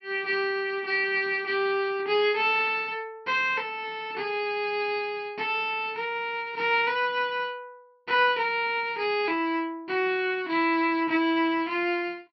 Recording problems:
low-pass filter; nothing above 5.5 kHz

